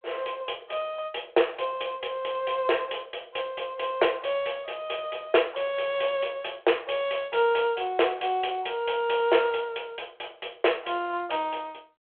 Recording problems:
telephone audio; 340 Hz to 3.4 kHz, G.726

